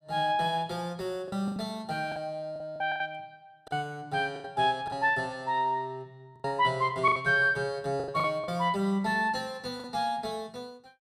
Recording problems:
packet loss; 8% of the sound replaced, filled with the last packet

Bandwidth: 14.5 kHz